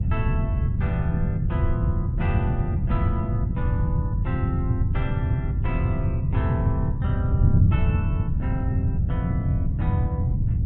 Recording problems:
wind on the microphone; below 130 Hz, SNR -8 dB

